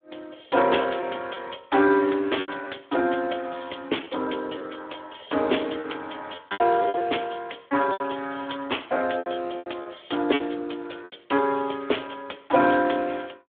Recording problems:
telephone audio; 240 Hz to 3.5 kHz, Speex
packet loss; 7% of the sound replaced, filled with repeated pitch periods

